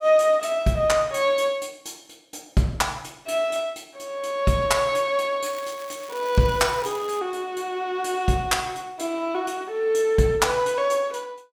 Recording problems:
crackling; from 5.5 to 7 s; loose cable, SNR 19 dB

